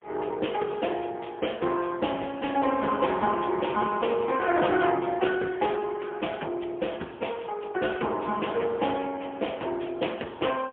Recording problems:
phone line; 240 Hz to 3.3 kHz, AMR-NB, then MP3

